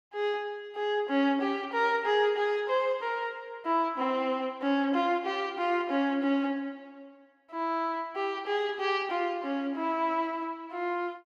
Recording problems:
none

